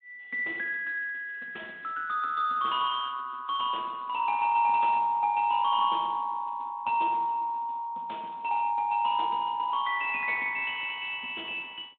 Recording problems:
telephone audio; 240 Hz to 3.7 kHz, Speex

